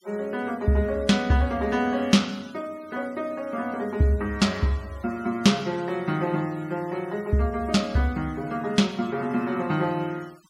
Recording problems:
noise reduction artefacts; signal-to-artefact ratio 25 dB

